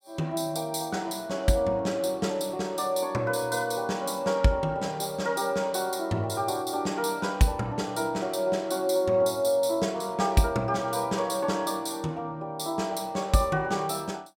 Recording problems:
none

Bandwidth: 16 kHz